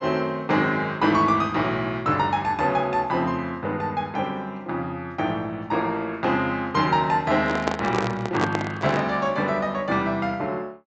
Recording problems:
low-pass filter; nothing above 8 kHz
handling noise; from 7.5 to 9 s; peak +3 dB vs average level

